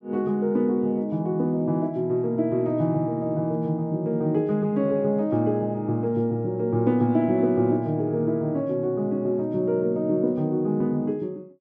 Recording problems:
none

